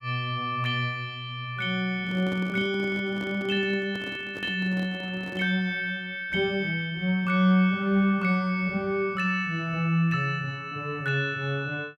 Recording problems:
microphone handling noise; from 2 to 5.5 s; peak -8 dB vs average level

